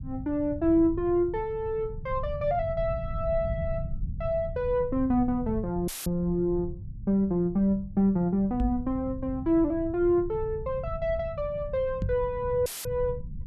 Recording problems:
low-frequency rumble; below 130 Hz, SNR 11 dB
dropout; at 6 s and at 13 s; filled with static
microphone thump; at 8.5 s and at 12 s; peak +1 dB vs average level

